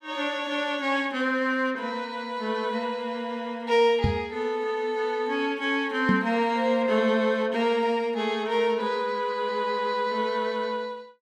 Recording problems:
microphone bump; at 4 s and at 6 s; peak +6 dB vs average level

